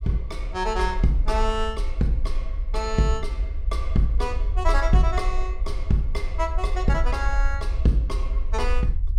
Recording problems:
low-frequency rumble; below 52 Hz, SNR 2 dB

